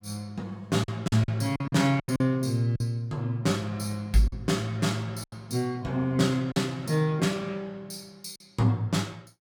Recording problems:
lost packets; 6% of the sound replaced, filled with silence

